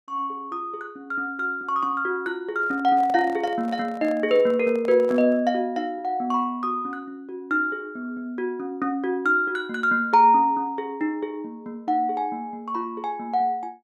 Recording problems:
handling noise; from 2.5 to 5.5 s; peak -10 dB vs average level

